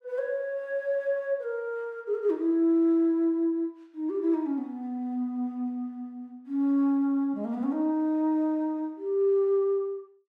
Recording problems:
none

